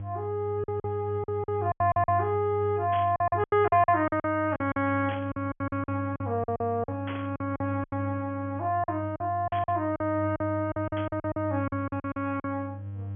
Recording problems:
treble cut off; nothing above 3.3 kHz
electrical hum; 50 Hz, harmonics up to 500 Hz, SNR 9 dB
lost packets; 15% of the sound replaced, filled with silence
static burst; 5 times, first at 3 s; peak -7 dB vs average level

